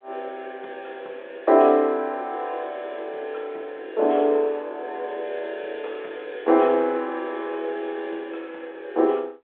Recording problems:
phone line; 300 Hz to 3.7 kHz, G.726

